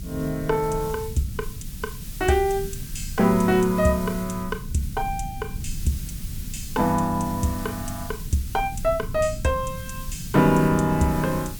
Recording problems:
hiss; SNR 16 dB
low-frequency rumble; below 140 Hz, SNR 12 dB

